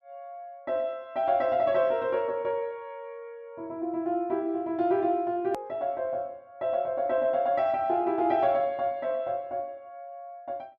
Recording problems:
edit click; at 5.5 s

